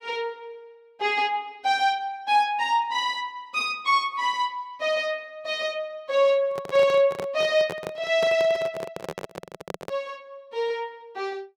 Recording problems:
microphone handling noise; from 6.5 to 10 s; peak -4 dB vs average level

